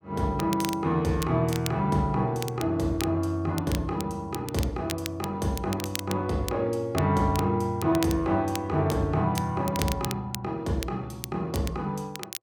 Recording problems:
crackling; vinyl, SNR 12 dB

